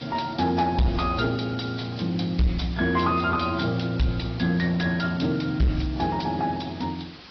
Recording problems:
treble cut off; nothing above 5.5 kHz
lossy compression; AAC, log-spectral distance 8 dB
distorted audio; soft clipping, signal-to-distortion ratio 5 dB
background hiss; slope -1 dB per octave, SNR 19 dB

